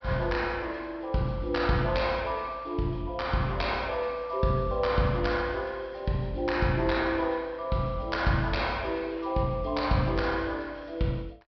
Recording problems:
treble cut off; nothing above 5.5 kHz

